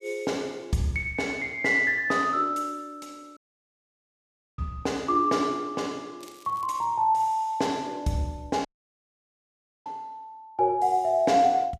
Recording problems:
dropout; at 3.5 s for 1 s and at 8.5 s for 1 s
crackle; at 6 s; loose cable, SNR 27 dB

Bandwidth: 14.5 kHz